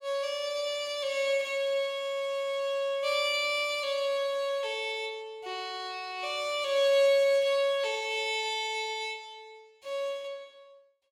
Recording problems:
none

